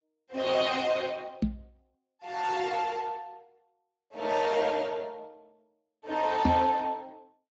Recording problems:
lossy codec; Speex, log-spectral distance 4 dB, nothing above 7.3 kHz
microphone bump; at 1.5 s and at 6.5 s; peak +8 dB vs average level

